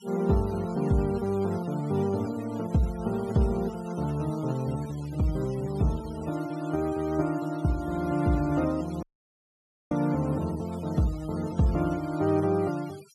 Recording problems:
denoising artefacts; signal-to-artefact ratio 20 dB
audio cutting out; at 9 s for 1 s

